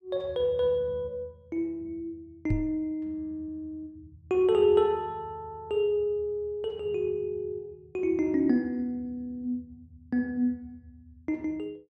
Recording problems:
knock on the microphone; at 2.5 s; peak +4 dB vs average level

